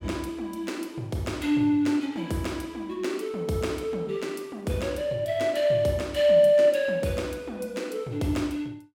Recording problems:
none

